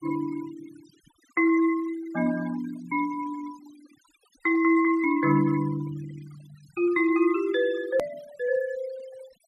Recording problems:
noise reduction artefacts; signal-to-artefact ratio 20 dB
click at an edit; at 8 s

